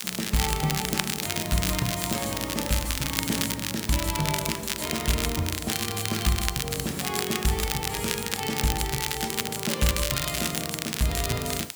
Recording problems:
background hiss; slope 0 dB per octave, SNR 13 dB
crackling; vinyl, SNR 1 dB

